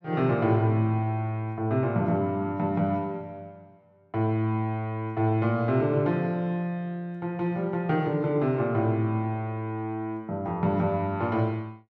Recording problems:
none

